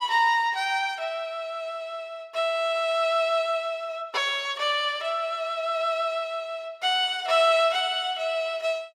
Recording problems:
none

